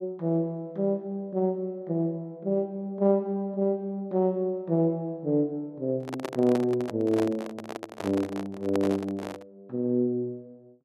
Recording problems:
microphone handling noise; from 6 to 9.5 s; peak -1 dB vs average level

